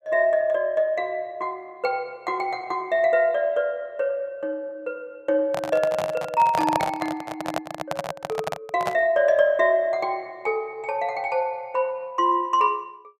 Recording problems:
handling noise; from 5.5 to 9 s; peak +3 dB vs average level

